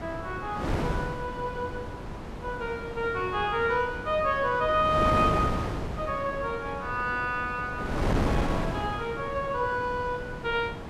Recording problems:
wind on the microphone; below 650 Hz, SNR 4 dB

